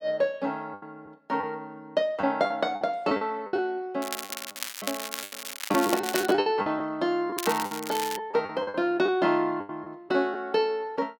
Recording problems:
packet loss; 11% of the sound replaced, filled with the last packet
crackling; from 4 to 6.5 s and at 7.5 s; loose cable, SNR 7 dB

